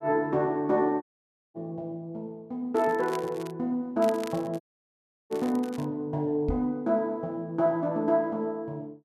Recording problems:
audio cutting out; at 1 s for 0.5 s and at 4.5 s for 0.5 s
crackling; at 2.5 s and from 4 to 6 s; loose cable, SNR 19 dB
microphone bump; at 6.5 s; peak +3 dB vs average level

